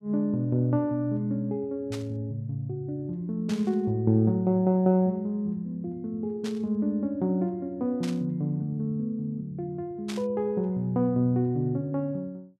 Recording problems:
burst of static; 5 times, first at 2 s; peak -6 dB vs average level

